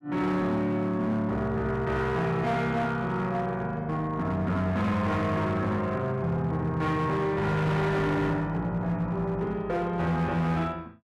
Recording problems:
distortion; hard clipping, signal-to-distortion ratio 11 dB

